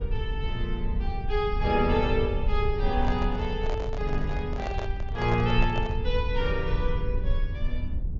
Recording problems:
low-pass filter; nothing above 7.2 kHz
rumble; below 70 Hz, SNR 2 dB
microphone handling noise; from 3 to 6 s; peak -1 dB vs average level

